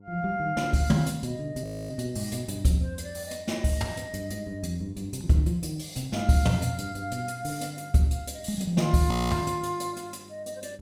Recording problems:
mains hum; 50 Hz, harmonics up to 900 Hz, SNR 25 dB
audio freezing; at 1.5 s and at 9 s

